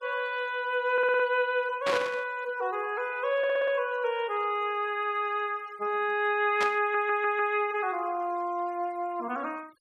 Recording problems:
denoising artefacts; signal-to-artefact ratio 27 dB
stutter; at 1 s, at 3.5 s and at 7 s
burst of static; at 2 s and at 6.5 s; peak 0 dB vs average level

